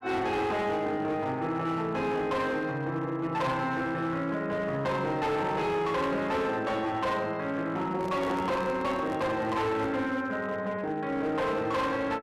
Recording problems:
distortion; hard clipping, signal-to-distortion ratio 10 dB
handling noise; from 8 to 10 s; peak -3 dB vs average level

